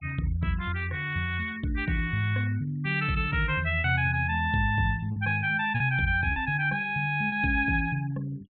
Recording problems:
treble cut off; nothing above 4 kHz
denoising artefacts; signal-to-artefact ratio 26 dB
packet loss; 2% of the sound replaced, filled with repeated pitch periods

